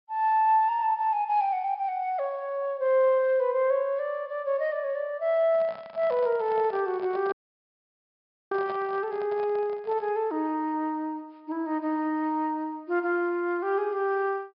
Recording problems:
treble cut off; nothing above 5.5 kHz
handling noise; from 5.5 to 10 s; peak -9 dB vs average level
audio cutting out; at 7.5 s for 1 s

